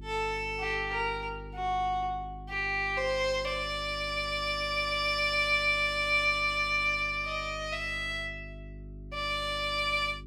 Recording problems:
hum; 50 Hz, harmonics up to 400 Hz, SNR 16 dB

